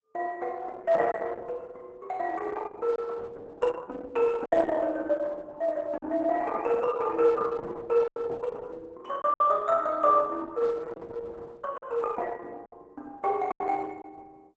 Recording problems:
lossy compression; Opus, log-spectral distance 3 dB, nothing above 8 kHz
packet loss; 4% of the sound replaced, filled with silence

